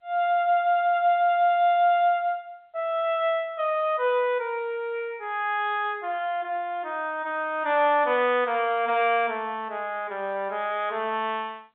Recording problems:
phone line; 220 Hz to 3.7 kHz, G.711

